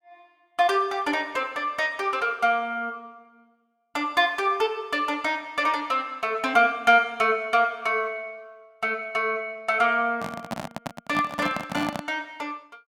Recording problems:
microphone handling noise; from 10 to 12 s; peak -3 dB vs average level

